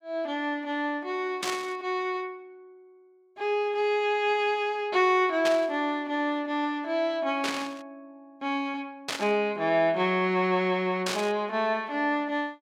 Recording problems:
burst of static; 5 times, first at 1.5 s; peak 0 dB vs average level

